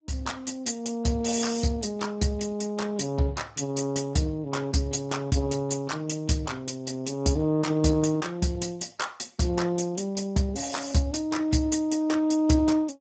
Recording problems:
lossy compression; Speex, log-spectral distance 6 dB, nothing above 7.6 kHz

